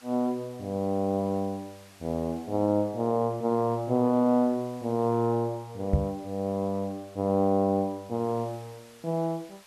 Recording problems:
hiss; slope 0 dB per octave, SNR 26 dB
microphone bump; at 6 s; peak +8 dB vs average level

